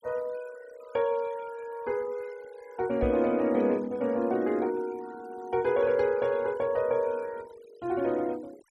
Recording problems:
denoising artefacts; signal-to-artefact ratio 24 dB
microphone thump; at 3 s; peak -1 dB vs average level

